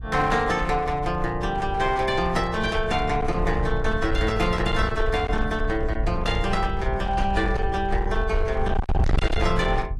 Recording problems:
lossy codec; AAC, log-spectral distance 2 dB
distortion; hard clipping, uneven, signal-to-distortion ratio 6 dB
wind on the microphone; below 76 Hz, SNR 5 dB

